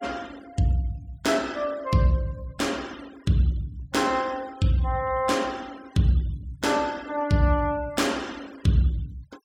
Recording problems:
denoising artefacts; signal-to-artefact ratio 22 dB

